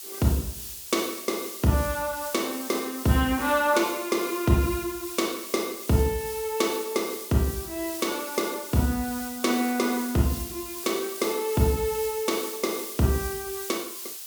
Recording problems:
hiss; SNR 8 dB

